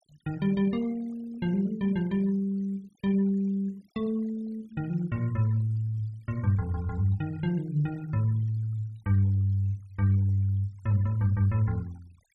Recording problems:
noise reduction artefacts; signal-to-artefact ratio 27 dB

